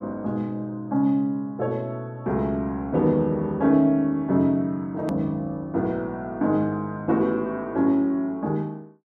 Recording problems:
click at an edit; at 5 s

